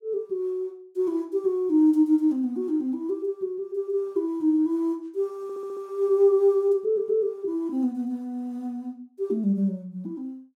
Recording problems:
stutter; at 5.5 s

